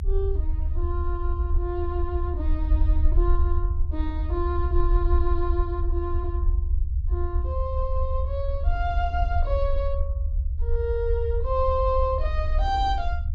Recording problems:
low-frequency rumble; below 72 Hz, SNR -3 dB

